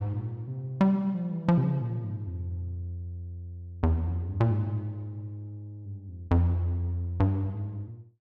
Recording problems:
none

